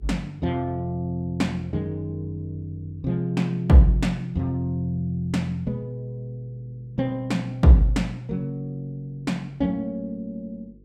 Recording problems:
hum; 50 Hz, harmonics up to 500 Hz, SNR 28 dB

